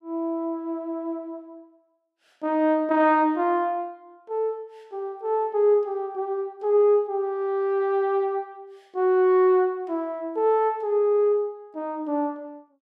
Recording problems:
none

